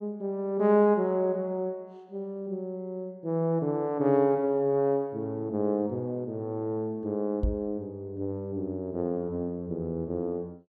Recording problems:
microphone thump; at 7.5 s; peak +3 dB vs average level

